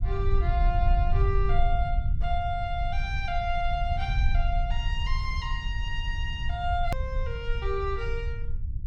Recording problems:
low-frequency rumble; below 70 Hz, SNR -2 dB
hard cut with a click; at 7 s

